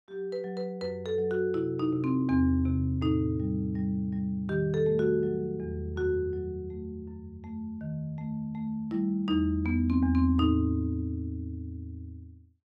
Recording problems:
none

